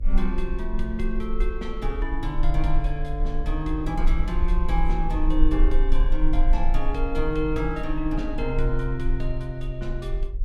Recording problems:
hum; 50 Hz, harmonics up to 550 Hz, SNR 26 dB
low-frequency rumble; below 34 Hz, strongest tone 20 Hz, SNR 0 dB

